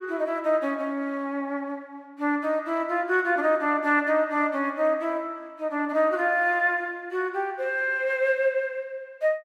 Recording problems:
none

